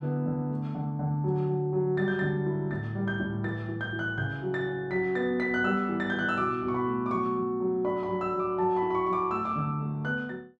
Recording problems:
none

